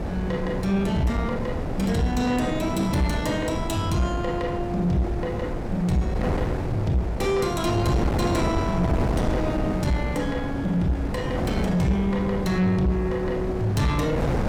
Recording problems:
distorted audio; soft clipping, signal-to-distortion ratio 11 dB
wind on the microphone; below 460 Hz, SNR 4 dB

